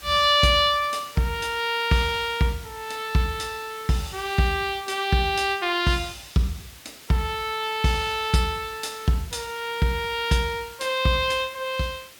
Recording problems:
background hiss; slope 0 dB per octave, SNR 19 dB

